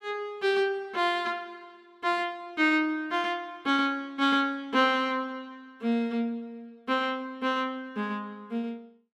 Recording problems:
none

